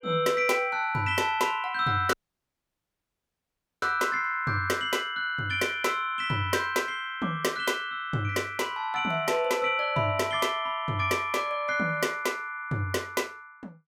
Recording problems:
dropout; at 2 s for 1.5 s

